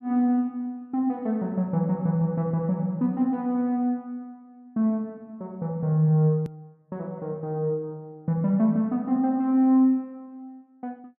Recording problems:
edit click; at 6.5 s

